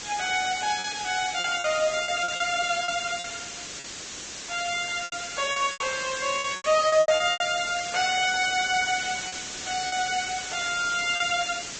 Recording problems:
low-pass filter; nothing above 8 kHz
codec artefacts; Vorbis, log-spectral distance 18 dB
background hiss; SNR 8 dB
packet loss; 9% of the sound replaced, filled with repeated pitch periods

